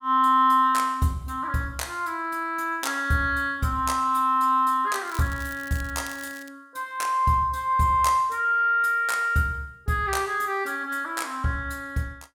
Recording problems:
crackle; from 5 to 6.5 s; loose cable, SNR 20 dB

